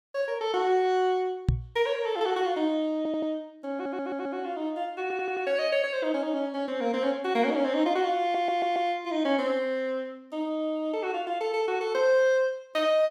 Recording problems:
microphone bump; at 1.5 s; peak +7 dB vs average level
stutter; 4 times, first at 3 s

